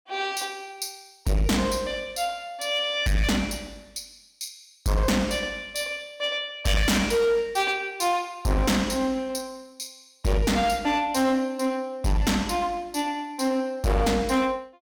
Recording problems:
distortion; hard clipping, signal-to-distortion ratio 6 dB

